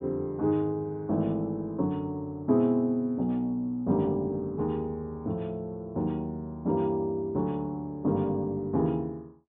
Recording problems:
treble cut off; nothing above 4 kHz

